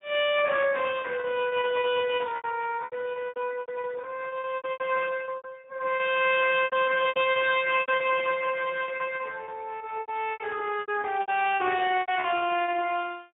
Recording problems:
treble cut off; nothing above 3.2 kHz
lossy compression; Speex, log-spectral distance 4 dB
lost packets; 16% of the sound replaced, filled with repeated pitch periods

